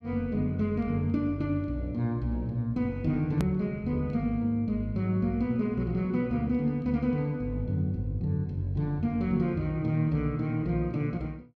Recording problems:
edit click; at 3.5 s

